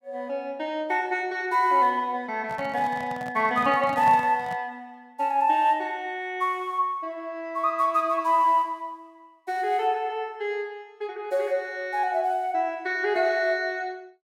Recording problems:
handling noise; from 2.5 to 4.5 s; peak -6 dB vs average level

